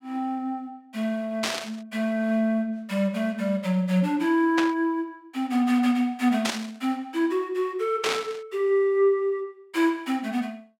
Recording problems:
burst of static; 4 times, first at 1.5 s; peak +2 dB vs average level

